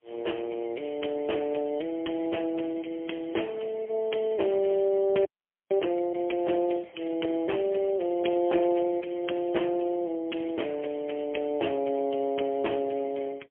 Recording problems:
phone line; 240 Hz to 3.3 kHz, AMR-NB, then MP3
frozen audio; at 5.5 s

